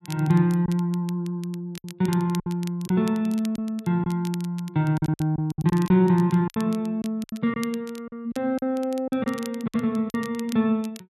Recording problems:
crackle; vinyl, SNR 21 dB
packet loss; 9% of the sound replaced, filled with silence

